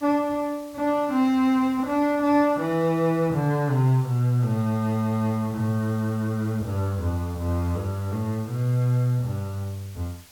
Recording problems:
hiss; slope 0 dB per octave, SNR 24 dB

